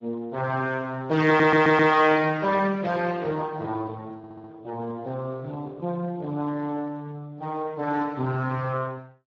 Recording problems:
lossy compression; Speex, log-spectral distance 3 dB, nothing above 7.3 kHz
stutter; at 1.5 s and at 4 s

